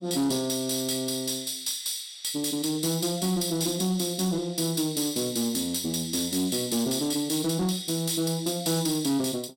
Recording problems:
distortion; soft clipping, signal-to-distortion ratio 12 dB

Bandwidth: 16.5 kHz